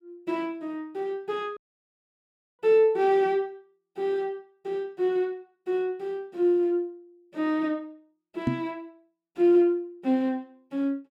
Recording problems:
dropout; at 1.5 s for 1 s
knock on the microphone; at 8.5 s; peak +5 dB vs average level

